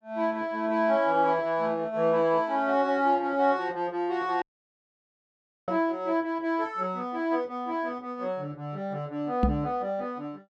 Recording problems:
dropout; at 4.5 s for 1.5 s
knock on the microphone; at 9.5 s; peak +7 dB vs average level

